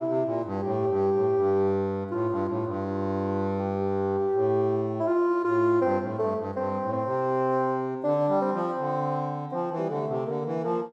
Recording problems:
none

